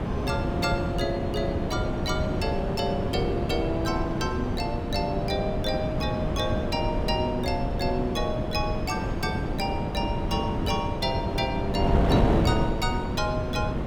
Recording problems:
wind on the microphone; below 370 Hz, SNR -1 dB

